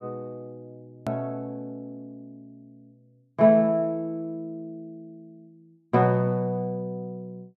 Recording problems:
edit click; at 1 s

